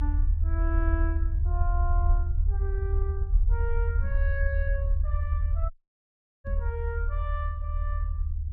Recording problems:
rumble; below 76 Hz, strongest tone 38 Hz, SNR -10 dB
knock on the microphone; at 4 s and at 6.5 s; peak -2 dB vs average level
dropout; at 5.5 s for 0.5 s

